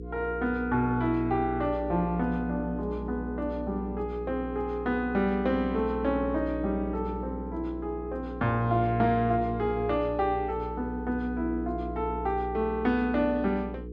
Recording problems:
electrical hum; 60 Hz, harmonics up to 480 Hz, SNR 9 dB

